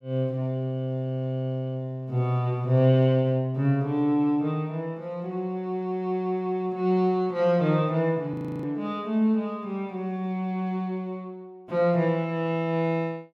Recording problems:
frozen audio; at 8.5 s

